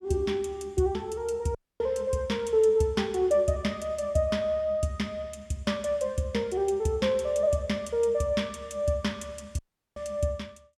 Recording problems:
dropout; at 1.5 s and at 9.5 s

